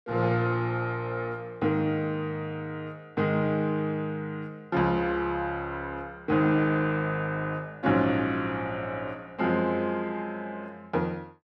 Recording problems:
none

